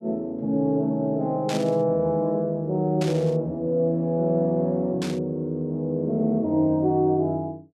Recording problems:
static burst; at 1.5 s, at 3 s and at 5 s; peak -6 dB vs average level

